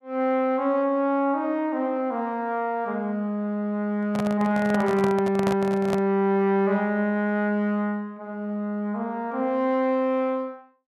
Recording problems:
handling noise; from 4 to 6 s; peak 0 dB vs average level

